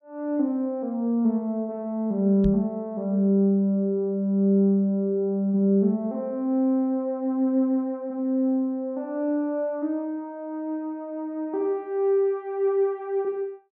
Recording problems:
microphone bump; at 2.5 s; peak +1 dB vs average level

